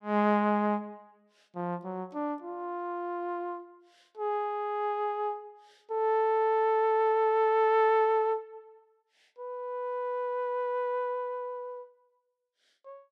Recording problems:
none

